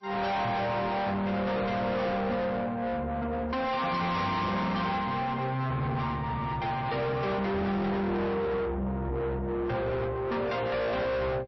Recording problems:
codec artefacts; MP3, log-spectral distance 2 dB, nothing above 5.7 kHz
distortion; soft clipping, signal-to-distortion ratio 5 dB

